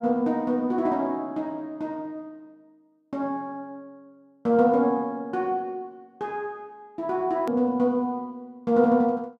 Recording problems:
click at an edit; at 7.5 s

